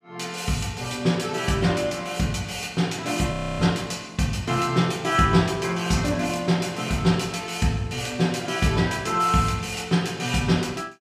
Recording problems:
frozen audio; at 3.5 s

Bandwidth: 14.5 kHz